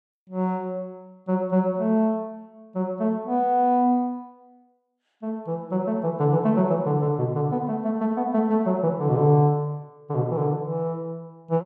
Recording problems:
none

